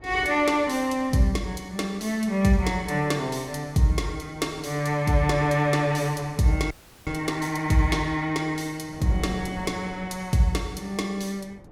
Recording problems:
wind on the microphone; below 430 Hz, SNR 21 dB
audio freezing; at 6.5 s

